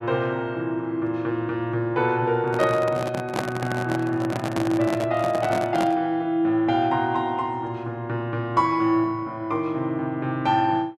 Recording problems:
handling noise; from 2.5 to 6 s; peak +1 dB vs average level

